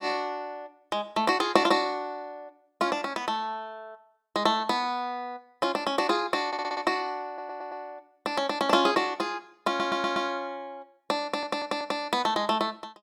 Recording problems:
stutter; 4 times, first at 6.5 s

